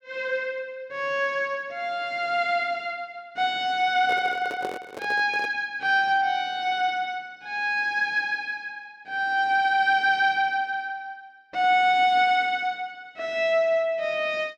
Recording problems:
handling noise; from 4 to 5.5 s; peak -5 dB vs average level

